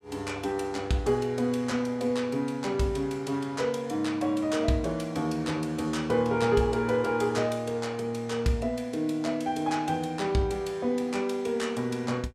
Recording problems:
none

